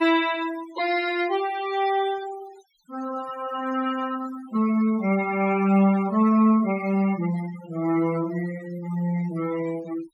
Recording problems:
noise reduction artefacts; signal-to-artefact ratio 15 dB

